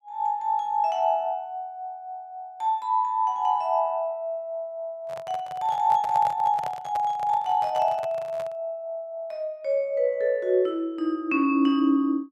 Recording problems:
microphone handling noise; from 5 to 8.5 s; peak -5 dB vs average level

